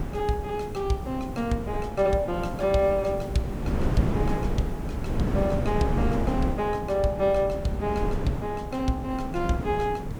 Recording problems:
background hiss; slope +1 dB per octave, SNR 28 dB
wind noise; below 280 Hz, SNR 3 dB

